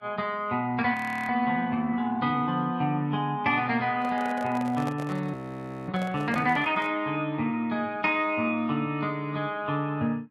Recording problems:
lossy compression; Vorbis, log-spectral distance 2 dB, nothing above 13.1 kHz
frozen audio; at 1 s and at 5.5 s for 0.5 s
microphone handling noise; from 4 to 7 s; peak -5 dB vs average level

